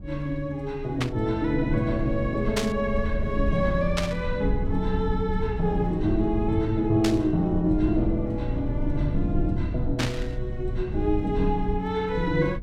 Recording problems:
low-frequency rumble; below 96 Hz, SNR 6 dB
burst of static; 5 times, first at 1 s; peak +3 dB vs average level

